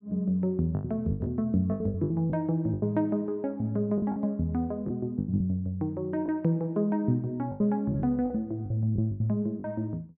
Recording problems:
lost packets; 11% of the sound replaced, filled with the last packet

